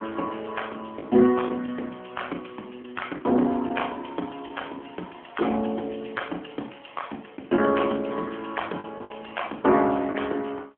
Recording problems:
telephone audio; 220 Hz to 3.3 kHz, AMR-NB
lost packets; 3% of the sound replaced, filled with the last packet

